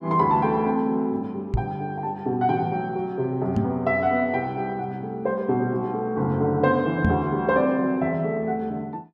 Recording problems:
microphone thump; at 1.5 s, at 3.5 s and at 7 s; peak +4 dB vs average level

